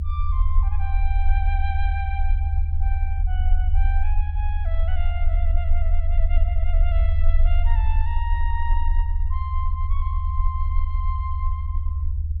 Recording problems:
low-frequency rumble; below 74 Hz, strongest tone 20 Hz, SNR -12 dB

